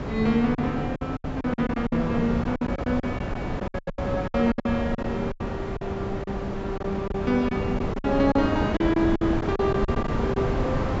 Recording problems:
low-pass filter; nothing above 7.6 kHz
wind on the microphone; below 580 Hz, SNR 3 dB
packet loss; 14% of the sound replaced, filled with silence

